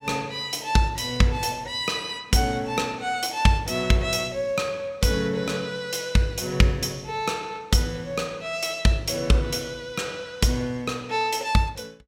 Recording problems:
none

